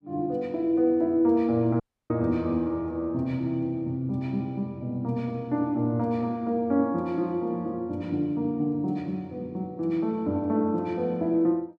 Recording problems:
audio cutting out; at 2 s

